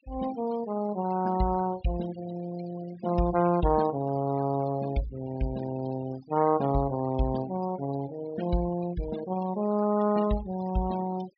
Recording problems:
treble missing; nothing above 5.5 kHz
denoising artefacts; signal-to-artefact ratio 16 dB

